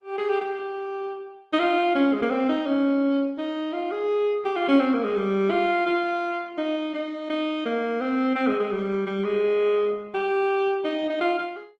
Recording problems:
codec artefacts; Opus, log-spectral distance 2 dB

